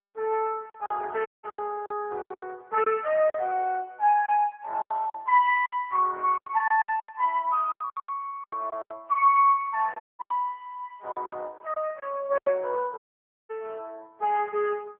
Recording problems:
telephone audio; 320 Hz to 3.3 kHz, AMR-NB
packet loss; 12% of the sound replaced, filled with silence
audio cutting out; at 1.5 s, at 10 s and at 13 s for 0.5 s

